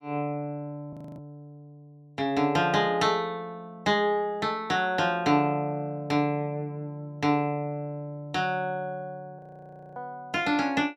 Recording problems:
frozen audio; at 1 s and at 9.5 s for 0.5 s

